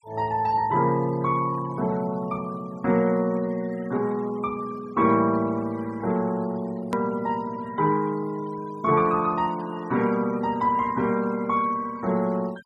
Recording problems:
denoising artefacts; signal-to-artefact ratio 22 dB
hard cut with a click; at 7 s

